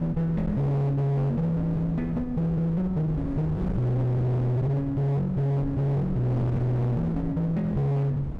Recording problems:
distortion; hard clipping, uneven, signal-to-distortion ratio 6 dB
wind noise; below 230 Hz, SNR 10 dB

